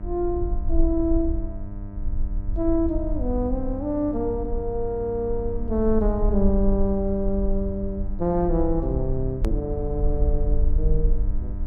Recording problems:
hum; 50 Hz, harmonics up to 1.3 kHz, SNR 12 dB
low-frequency rumble; below 52 Hz, SNR 4 dB
edit click; at 9.5 s

